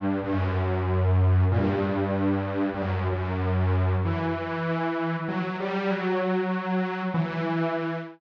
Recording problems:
none

